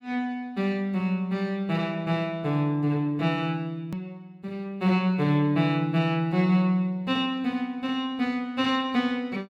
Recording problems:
hard cut with a click; at 4 s

